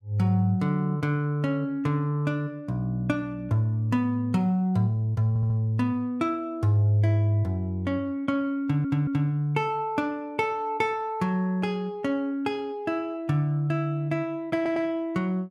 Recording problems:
audio stuttering; at 5.5 s, at 8.5 s and at 15 s

